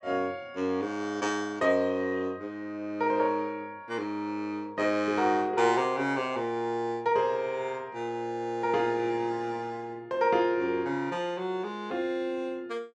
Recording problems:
none

